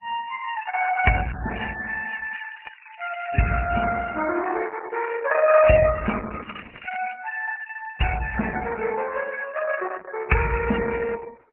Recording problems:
lossy codec; MP3, then Opus, log-spectral distance 11 dB, nothing above 2.7 kHz
crackling; from 1 to 4 s and from 6 to 7 s; loose cable, SNR 19 dB

